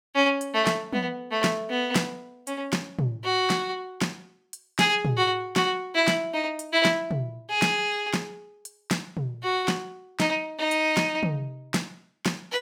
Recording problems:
none

